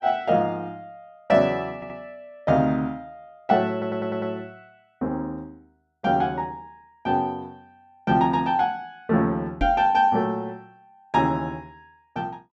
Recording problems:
stutter; at 2 s and at 3.5 s
knock on the microphone; at 9.5 s; peak 0 dB vs average level

